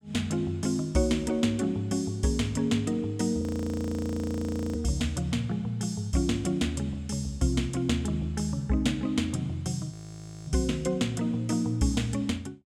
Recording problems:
audio freezing; at 3.5 s for 1.5 s and at 10 s for 0.5 s

